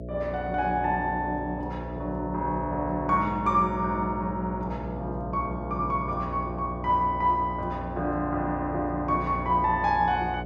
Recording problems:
hum; 60 Hz, harmonics up to 660 Hz, SNR 8 dB

